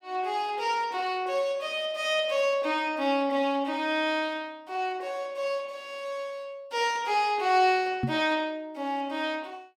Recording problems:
microphone thump; at 8 s; peak +3 dB vs average level

